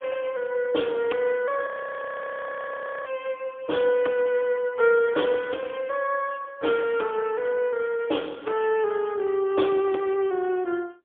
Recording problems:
phone line; 280 Hz to 3.4 kHz, AMR-NB, then MP3
frozen audio; at 1.5 s for 1.5 s

